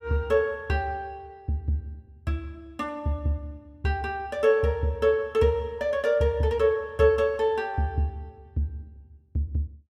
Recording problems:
none

